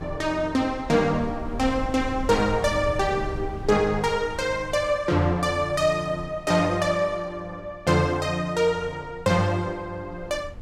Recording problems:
wind on the microphone; below 110 Hz, SNR 15 dB

